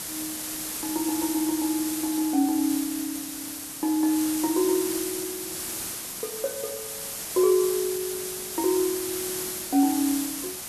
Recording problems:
background hiss; slope -1 dB per octave, SNR 4 dB

